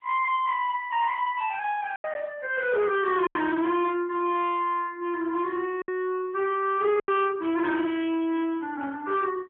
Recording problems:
telephone audio; 300 Hz to 3.5 kHz, AMR-NB
distorted audio; soft clipping, signal-to-distortion ratio 10 dB
lost packets; 3% of the sound replaced, filled with silence

